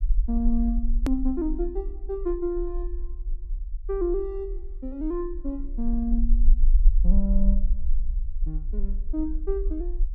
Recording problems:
rumble; below 42 Hz, strongest tone 24 Hz, SNR -1 dB
click at an edit; at 1 s

